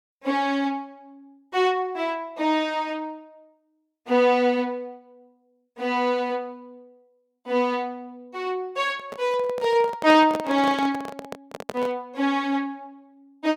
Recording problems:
microphone handling noise; from 9 to 12 s; peak -3 dB vs average level

